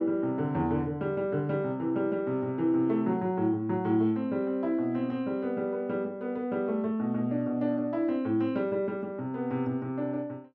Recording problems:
none

